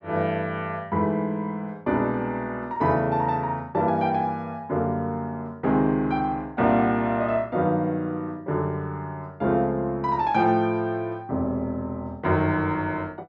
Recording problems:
none

